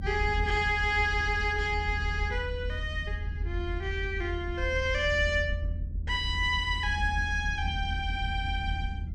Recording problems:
low-frequency rumble; below 80 Hz, SNR 5 dB

